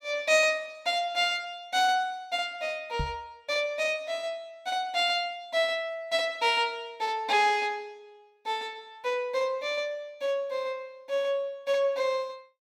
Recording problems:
knock on the microphone; at 3 s; peak -1 dB vs average level

